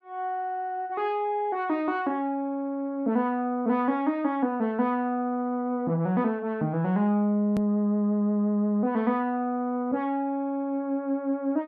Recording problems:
edit click; at 7.5 s

